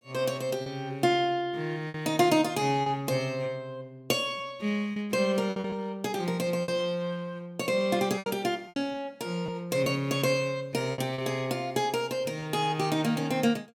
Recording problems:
lost packets; 6% of the sound replaced, filled with repeated pitch periods

